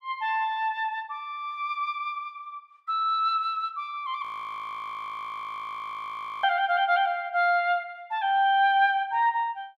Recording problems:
frozen audio; at 4 s for 2 s

